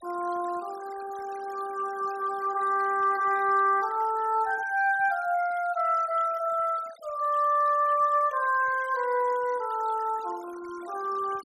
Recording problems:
denoising artefacts; signal-to-artefact ratio 22 dB

